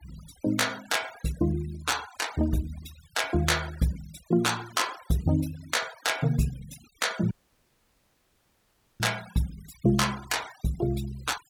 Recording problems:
denoising artefacts; signal-to-artefact ratio 16 dB
audio cutting out; at 7.5 s for 1.5 s

